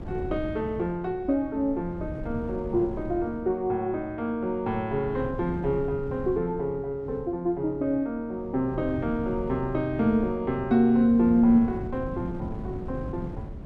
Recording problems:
wind on the microphone; below 220 Hz, SNR 12 dB

